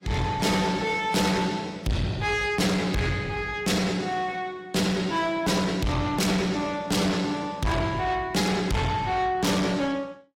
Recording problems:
lossy compression; AAC, log-spectral distance 3 dB, nothing above 16 kHz
distortion; soft clipping, signal-to-distortion ratio 6 dB

